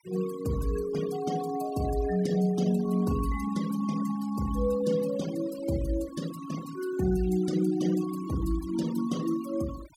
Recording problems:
noise reduction artefacts; signal-to-artefact ratio 15 dB

